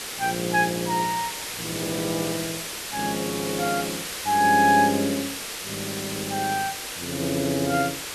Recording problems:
background hiss; slope 0 dB per octave, SNR 6 dB

